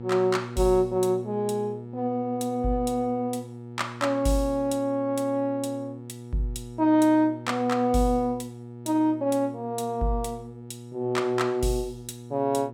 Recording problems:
hum; 60 Hz, harmonics up to 960 Hz, SNR 14 dB

